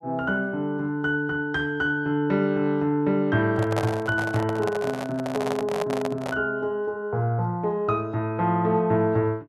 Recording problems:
microphone handling noise; from 3.5 to 6.5 s; peak +1 dB vs average level

